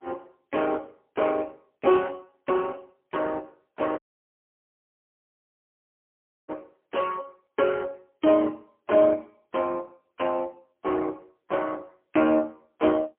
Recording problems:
telephone audio; 260 Hz to 3.3 kHz, AMR-NB, then MP3
audio cutting out; at 4 s for 2.5 s

